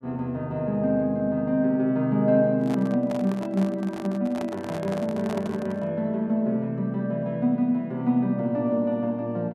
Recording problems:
handling noise; from 2.5 to 6 s; peak -6 dB vs average level

